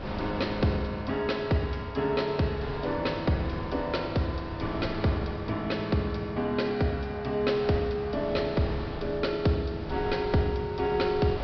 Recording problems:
low-pass filter; nothing above 5.5 kHz
wind on the microphone; below 750 Hz, SNR 13 dB

